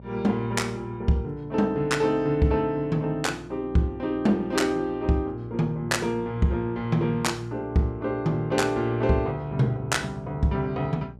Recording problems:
electrical hum; 60 Hz, harmonics up to 840 Hz, SNR 20 dB

